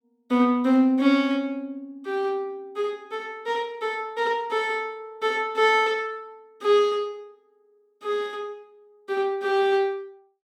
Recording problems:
none

